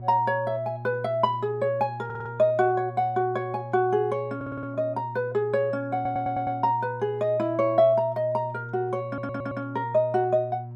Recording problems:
hum; 60 Hz, harmonics up to 720 Hz, SNR 13 dB
stutter; 4 times, first at 2 s

